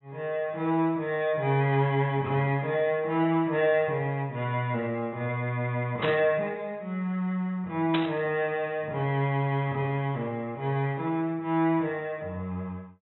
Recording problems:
low-pass filter; nothing above 3.8 kHz
burst of static; at 6 s and at 8 s; peak +1 dB vs average level

